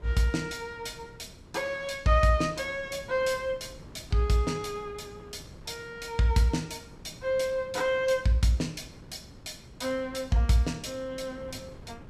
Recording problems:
wind on the microphone; below 350 Hz, SNR 20 dB

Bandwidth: 15 kHz